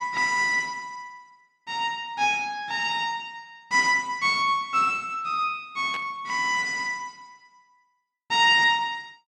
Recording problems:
burst of static; at 6 s; peak -10 dB vs average level

